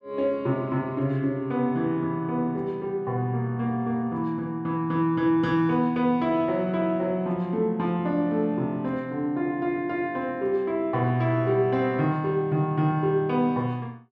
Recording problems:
none

